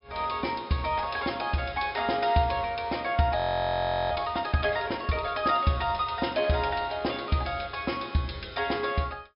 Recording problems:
low-pass filter; nothing above 5.5 kHz
audio freezing; at 3.5 s for 0.5 s

